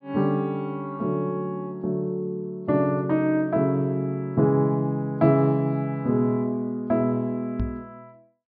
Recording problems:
treble cut off; nothing above 5.5 kHz
knock on the microphone; at 7.5 s; peak 0 dB vs average level

